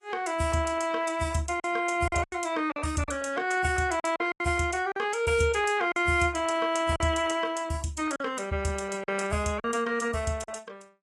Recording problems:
codec artefacts; AAC, log-spectral distance 3 dB, nothing above 11 kHz
lost packets; 6% of the sound replaced, filled with silence

